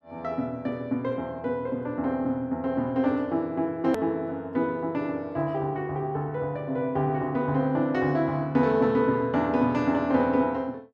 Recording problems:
click at an edit; at 4 s

